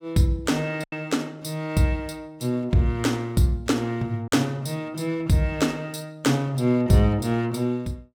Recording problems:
lost packets; 1.5% of the sound replaced, filled with silence

